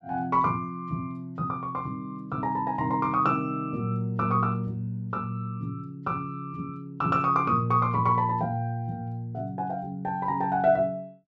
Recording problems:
none

